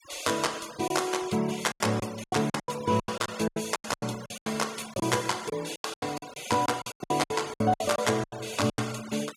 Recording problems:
noise reduction artefacts; signal-to-artefact ratio 15 dB
packet loss; 18% of the sound replaced, filled with silence

